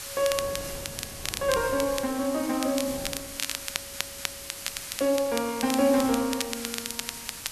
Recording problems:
hiss; slope +3 dB per octave, SNR 10 dB
wind on the microphone; below 480 Hz, SNR 20 dB
crackling; vinyl, SNR 8 dB
audio stuttering; at 3.5 s

